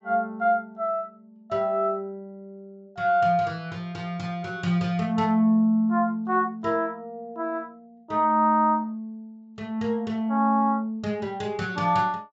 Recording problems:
treble cut off; nothing above 7.6 kHz

